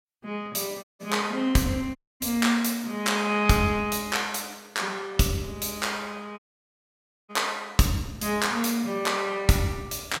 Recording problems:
audio cutting out; at 1 s, at 2 s and at 6.5 s for 1 s

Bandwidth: 16.5 kHz